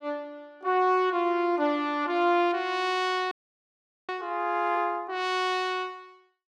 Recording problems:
frozen audio; at 3.5 s for 1 s

